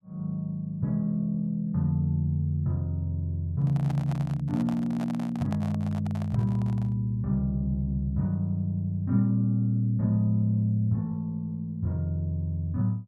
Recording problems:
handling noise; from 3.5 to 7 s; peak -8 dB vs average level

